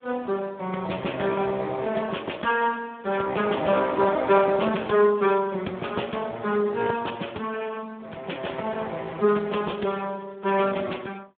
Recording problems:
phone line; 320 Hz to 3.5 kHz, Speex

